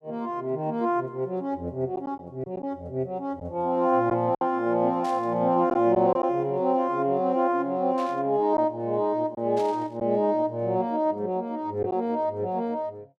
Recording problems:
lost packets; 2% of the sound replaced, filled with silence
static burst; at 5 s, at 8 s and at 9.5 s; peak -13 dB vs average level

